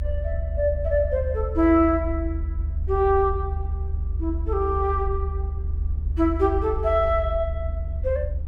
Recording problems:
low-frequency rumble; below 76 Hz, strongest tone 74 Hz, SNR 4 dB

